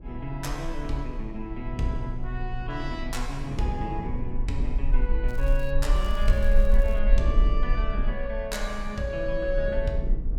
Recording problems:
hum; 60 Hz, harmonics up to 540 Hz, SNR 19 dB
low-frequency rumble; below 42 Hz, strongest tone 24 Hz, SNR -1 dB
wind on the microphone; below 270 Hz, SNR 8 dB
crackling; at 5.5 s and from 6 to 7 s; loose cable, SNR 22 dB

